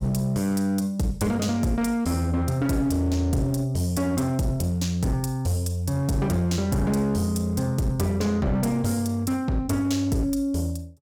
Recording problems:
distorted audio; hard clipping, uneven, signal-to-distortion ratio 11 dB

